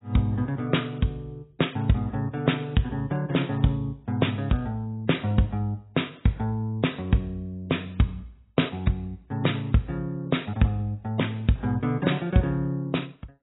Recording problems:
lossy compression; AAC, log-spectral distance 3 dB, nothing above 3.8 kHz

